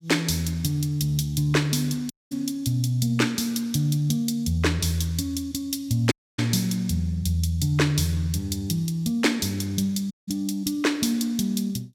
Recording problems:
dropout; at 2 s, at 6 s and at 10 s

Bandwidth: 17 kHz